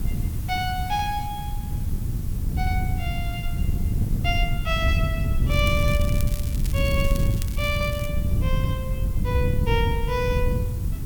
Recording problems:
hiss; SNR 15 dB
wind noise; below 120 Hz, SNR -3 dB
crackle; from 5.5 to 8 s; loose cable, SNR 11 dB

